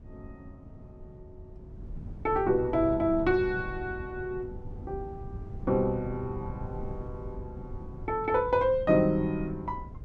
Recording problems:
wind noise; below 140 Hz, SNR 14 dB

